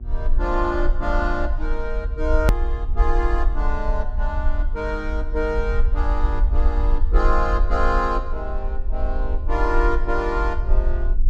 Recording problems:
hum; 60 Hz, harmonics up to 720 Hz, SNR 20 dB
low-frequency rumble; below 50 Hz, SNR -1 dB
hard cut with a click; at 2.5 s

